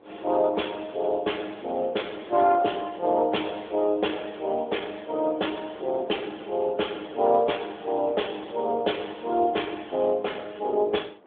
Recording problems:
phone line; 280 Hz to 3.6 kHz, AMR-NB
wind noise; below 760 Hz, SNR 22 dB

